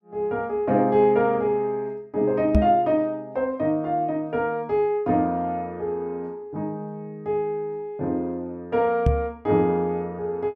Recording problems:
microphone thump; at 2.5 s and at 9 s; peak +8 dB vs average level

